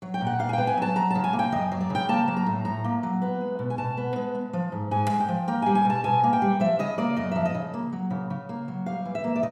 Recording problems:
none

